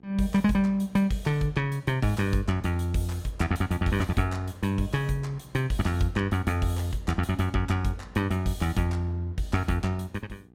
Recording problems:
hum; 60 Hz, harmonics up to 900 Hz, SNR 27 dB

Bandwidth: 16.5 kHz